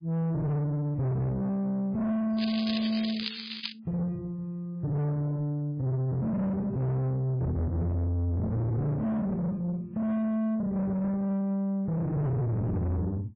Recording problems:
lossy codec; AAC, then MP3, log-spectral distance 3 dB, nothing above 11.3 kHz
distortion; soft clipping, signal-to-distortion ratio 7 dB
crackle; from 2.5 to 3.5 s; loose cable, SNR 7 dB

